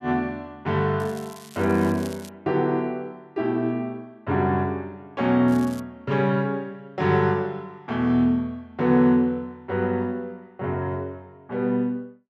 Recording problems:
crackle; from 1 to 2.5 s and at 5.5 s; loose cable, SNR 21 dB

